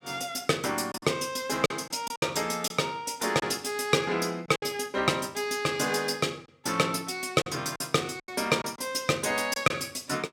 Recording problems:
packet loss; 6% of the sound replaced, filled with silence

